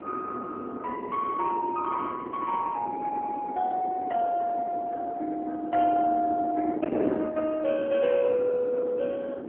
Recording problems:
telephone audio; 260 Hz to 2.2 kHz, AMR-NB
distortion; soft clipping, signal-to-distortion ratio 9 dB
wind noise; below 550 Hz, SNR 9 dB

